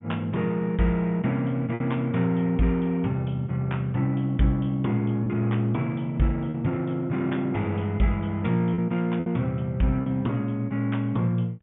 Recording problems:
treble missing; nothing above 3.5 kHz
lost packets; 2% of the sound replaced, filled with repeated pitch periods

